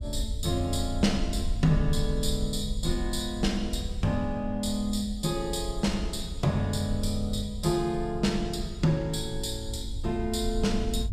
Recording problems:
rumble; below 66 Hz, SNR 7 dB

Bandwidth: 14.5 kHz